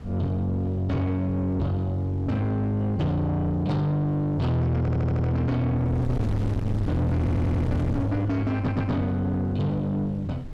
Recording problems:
distorted audio; soft clipping, signal-to-distortion ratio 7 dB
wind on the microphone; below 250 Hz, SNR 9 dB
audio stuttering; at 5 s, at 7 s and at 8.5 s

